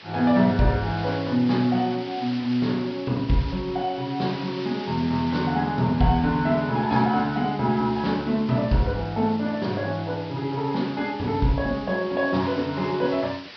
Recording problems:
treble missing; nothing above 5.5 kHz
hiss; SNR 17 dB

